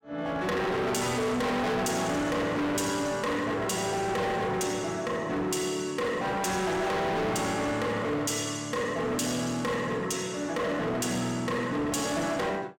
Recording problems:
distorted audio; hard clipping, signal-to-distortion ratio 5 dB

